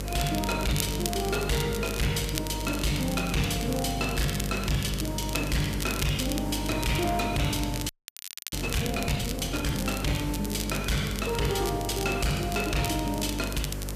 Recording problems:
distorted audio; soft clipping, signal-to-distortion ratio 6 dB
electrical hum; 50 Hz, harmonics up to 600 Hz, SNR 6 dB
hiss; SNR 14 dB
crackling; vinyl, SNR 9 dB
frozen audio; at 8 s for 0.5 s

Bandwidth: 14.5 kHz